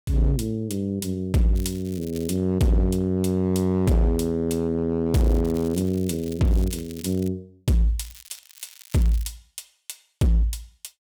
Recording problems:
distortion; hard clipping, uneven, signal-to-distortion ratio 10 dB
crackle; at 1.5 s, from 5 to 7.5 s and from 8 to 9.5 s; loose cable, SNR 21 dB

